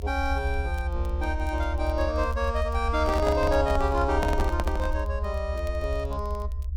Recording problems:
low-frequency rumble; below 72 Hz, SNR 2 dB
crackle; vinyl, SNR 28 dB
microphone handling noise; from 3 to 5 s; peak +3 dB vs average level

